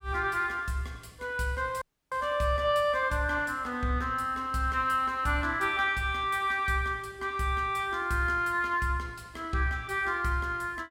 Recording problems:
audio cutting out; at 2 s

